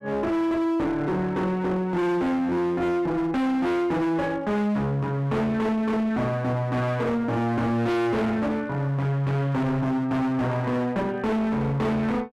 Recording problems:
distorted audio; hard clipping, uneven, signal-to-distortion ratio 5 dB

